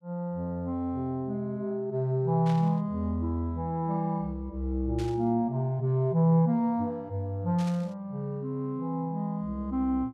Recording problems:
static burst; at 2.5 s, at 5 s and at 7.5 s; peak -11 dB vs average level

